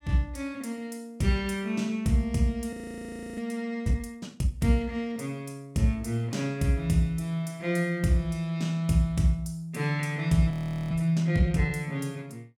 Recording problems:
audio freezing; at 2.5 s for 0.5 s and at 11 s

